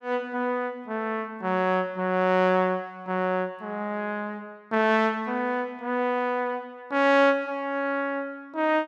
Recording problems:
none

